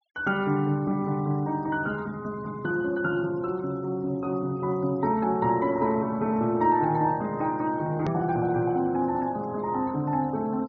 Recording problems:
low-pass filter; nothing above 6.6 kHz
denoising artefacts; signal-to-artefact ratio 28 dB
click at an edit; at 8 s

